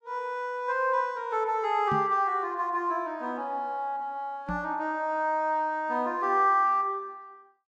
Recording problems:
knock on the microphone; at 2 s and at 4.5 s; peak -2 dB vs average level

